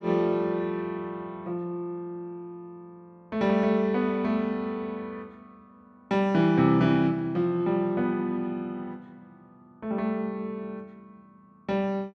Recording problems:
none

